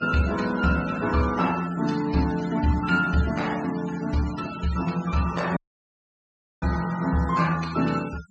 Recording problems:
treble missing; nothing above 8 kHz
denoising artefacts; signal-to-artefact ratio 15 dB
audio cutting out; at 5.5 s for 1 s

